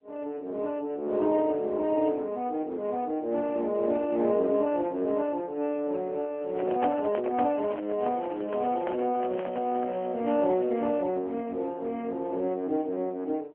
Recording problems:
telephone audio; 190 Hz to 3.8 kHz, AMR-NB
microphone handling noise; from 6.5 to 10 s; peak +1 dB vs average level
crackling; from 7.5 to 11 s; loose cable, SNR 28 dB

